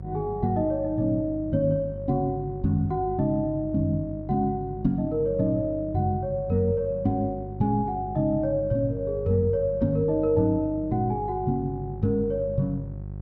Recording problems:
electrical hum; 50 Hz, harmonics up to 550 Hz, SNR 12 dB

